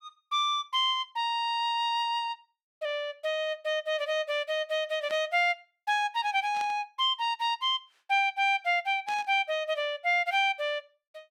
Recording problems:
static burst; at 5 s, at 6.5 s and at 9 s; peak -11 dB vs average level

